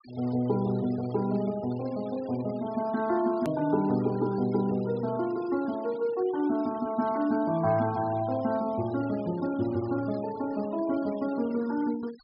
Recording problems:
treble missing; nothing above 5.5 kHz
noise reduction artefacts; signal-to-artefact ratio 21 dB
edit click; at 3.5 s

